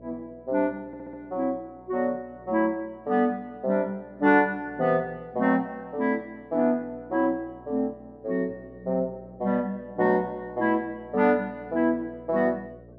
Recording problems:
hum; 60 Hz, harmonics up to 660 Hz, SNR 25 dB
stutter; at 1 s

